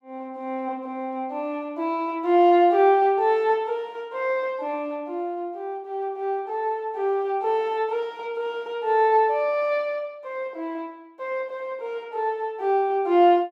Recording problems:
none

